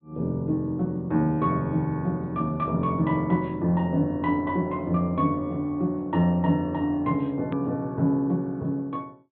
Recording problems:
treble cut off; nothing above 4 kHz
click at an edit; at 7.5 s

